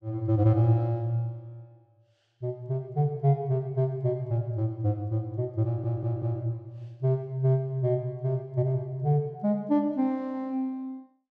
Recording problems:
stutter; at 5.5 s

